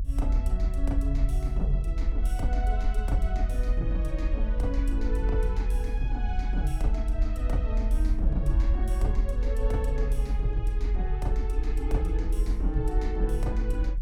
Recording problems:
low-frequency rumble; below 50 Hz, strongest tone 42 Hz, SNR -6 dB

